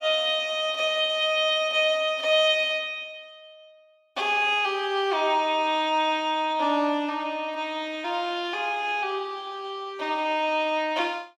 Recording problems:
none

